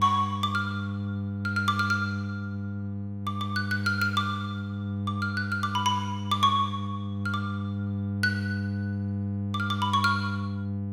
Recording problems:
hum; 50 Hz, harmonics up to 700 Hz, SNR 3 dB

